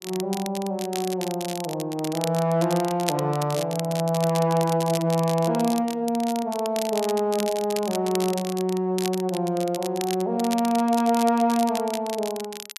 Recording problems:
crackle; vinyl, SNR 11 dB

